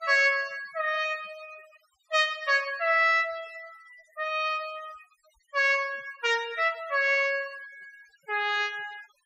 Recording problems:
noise reduction artefacts; signal-to-artefact ratio 23 dB

